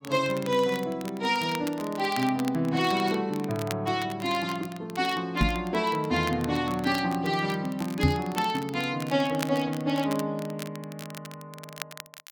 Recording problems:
crackling; vinyl, SNR 15 dB
knock on the microphone; at 5.5 s and at 8 s; peak +8 dB vs average level

